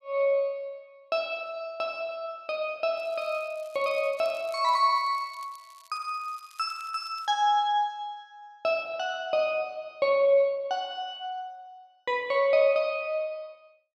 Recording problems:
crackling; from 3 to 7.5 s; loose cable, SNR 27 dB

